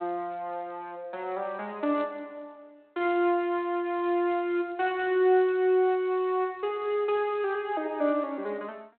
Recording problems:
telephone audio; 280 Hz to 3.7 kHz, G.726

